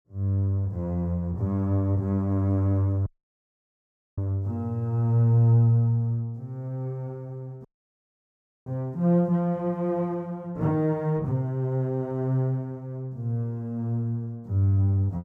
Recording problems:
audio cutting out; at 3 s for 1 s and at 7.5 s for 1 s

